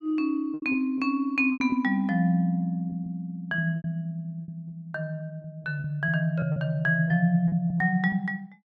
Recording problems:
lost packets; 9% of the sound replaced, filled with repeated pitch periods

